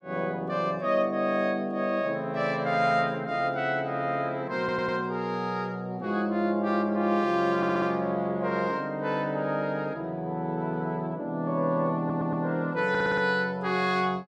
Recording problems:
stutter; 4 times, first at 4.5 s

